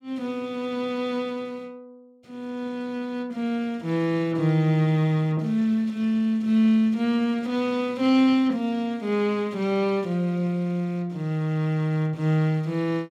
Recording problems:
none

